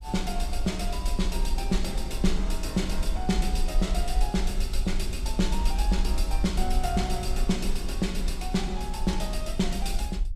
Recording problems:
rumble; below 48 Hz, SNR 1 dB

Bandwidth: 15 kHz